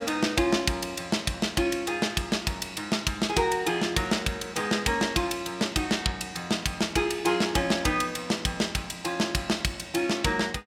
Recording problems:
none

